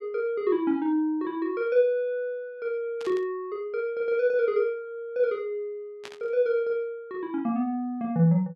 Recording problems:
static burst; at 3 s and at 6 s; peak -9 dB vs average level

